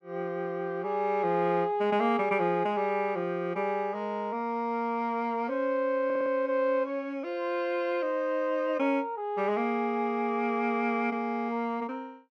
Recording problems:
audio stuttering; at 6 s

